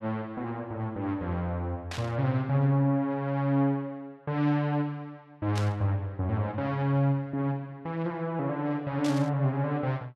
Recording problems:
burst of static; at 2 s, at 5.5 s and at 9 s; peak -5 dB vs average level

